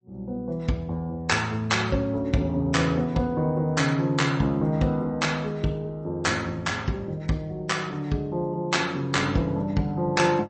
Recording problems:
lossy compression; MP3, log-spectral distance 2 dB, nothing above 8.2 kHz

